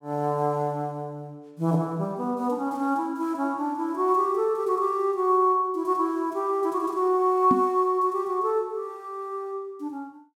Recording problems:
microphone bump; at 7.5 s; peak +5 dB vs average level

